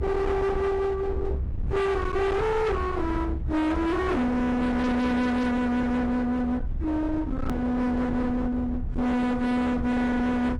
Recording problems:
codec artefacts; AAC, log-spectral distance 2 dB, nothing above 17.7 kHz
distortion; hard clipping, uneven, signal-to-distortion ratio 7 dB
low-frequency rumble; below 310 Hz, SNR 7 dB
click at an edit; at 7.5 s

